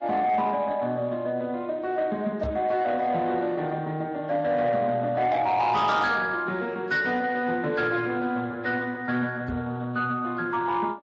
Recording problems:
codec artefacts; Speex, then AAC, log-spectral distance 2 dB
distorted audio; soft clipping, signal-to-distortion ratio 12 dB
microphone thump; at 2.5 s and at 9.5 s; peak -2 dB vs average level

